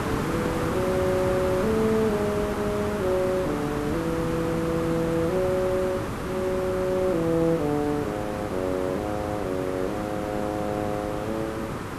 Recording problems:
background hiss; SNR 4 dB

